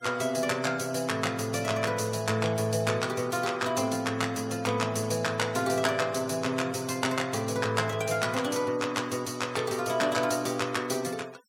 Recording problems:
noise reduction artefacts; signal-to-artefact ratio 21 dB

